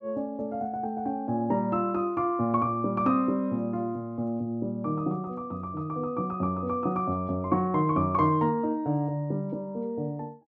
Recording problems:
none

